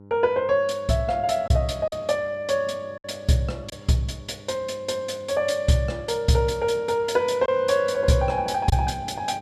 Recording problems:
mains hum; 50 Hz, harmonics up to 1 kHz, SNR 22 dB
lost packets; 2% of the sound replaced, filled with silence

